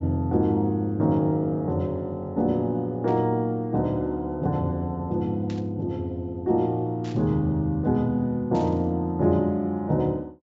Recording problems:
low-pass filter; nothing above 7.4 kHz
static burst; 4 times, first at 3 s; peak -14 dB vs average level

